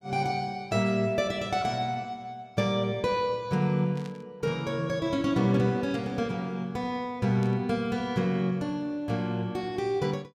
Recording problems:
burst of static; 4 times, first at 2.5 s; peak -15 dB vs average level

